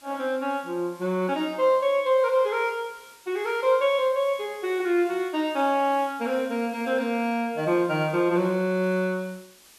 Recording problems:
background hiss; slope +1 dB per octave, SNR 26 dB

